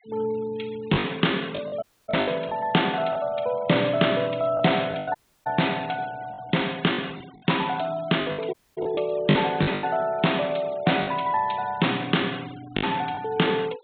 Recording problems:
treble cut off; nothing above 4 kHz
denoising artefacts; signal-to-artefact ratio 21 dB
lost packets; 7% of the sound replaced, filled with the last packet
audio cutting out; at 2 s, at 5 s and at 8.5 s

